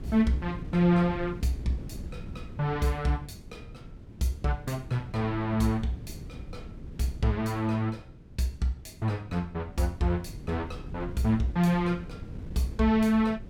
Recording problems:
wind on the microphone; below 190 Hz, SNR 14 dB

